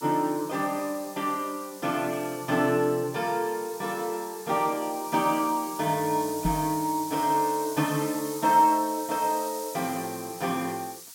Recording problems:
background hiss; SNR 13 dB
microphone thump; at 6.5 s; peak +3 dB vs average level

